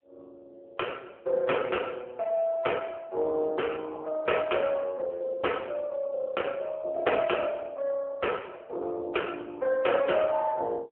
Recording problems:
phone line; 320 Hz to 3.2 kHz, AMR-NB

